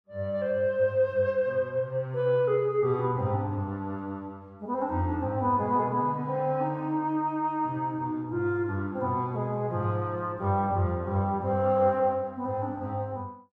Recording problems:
none

